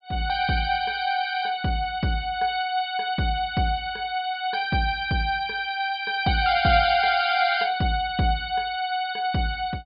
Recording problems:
treble missing; nothing above 5 kHz

